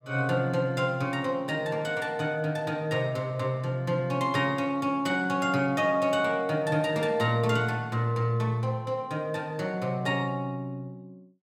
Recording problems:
none

